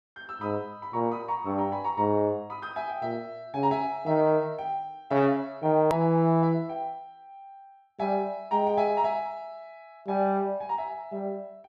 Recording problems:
edit click; at 6 s

